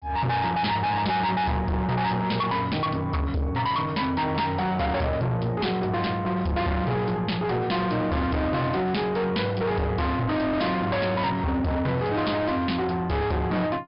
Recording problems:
treble cut off; nothing above 5.5 kHz
distortion; soft clipping, signal-to-distortion ratio 6 dB

